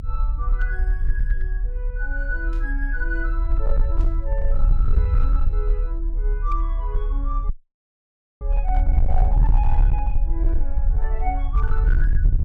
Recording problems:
distortion; hard clipping, signal-to-distortion ratio 11 dB
low-frequency rumble; below 46 Hz, SNR -10 dB
static burst; at 2.5 s and at 4 s; peak -14 dB vs average level
dropout; at 7.5 s for 1 s

